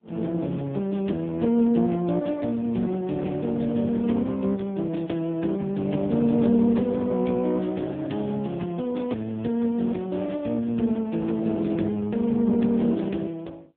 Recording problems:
telephone audio; 110 Hz to 3.6 kHz, AMR-NB

